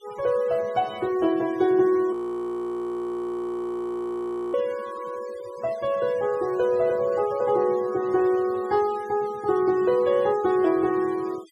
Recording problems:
denoising artefacts; signal-to-artefact ratio 23 dB
frozen audio; at 2 s for 2.5 s

